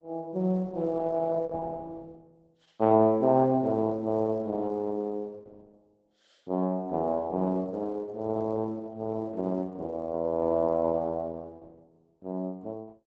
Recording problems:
lossy codec; Opus, log-spectral distance 2 dB

